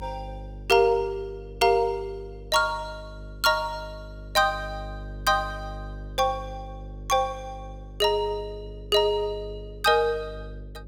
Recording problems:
electrical hum; 50 Hz, harmonics up to 550 Hz, SNR 16 dB

